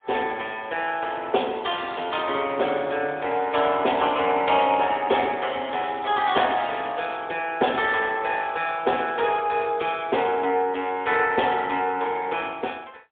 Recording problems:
telephone audio; 300 Hz to 3.5 kHz, AMR-NB, then MP3

